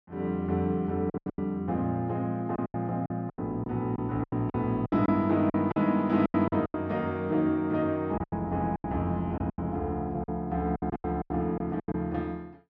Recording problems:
packet loss; 13% of the sound replaced, filled with silence

